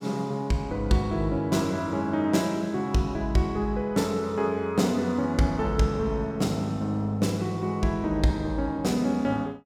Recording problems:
none

